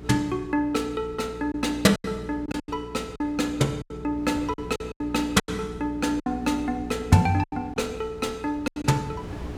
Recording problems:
electrical hum; 60 Hz, harmonics up to 420 Hz, SNR 14 dB
wind noise; below 470 Hz, SNR 21 dB
lost packets; 9% of the sound replaced, filled with silence

